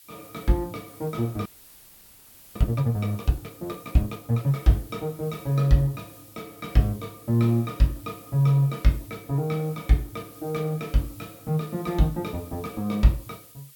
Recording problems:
background hiss; slope +4 dB per octave, SNR 22 dB
frozen audio; at 1.5 s for 1 s

